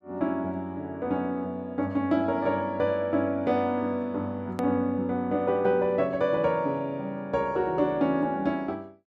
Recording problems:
click at an edit; at 4.5 s

